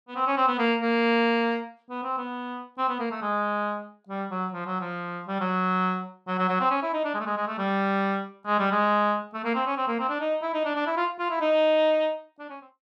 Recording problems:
none

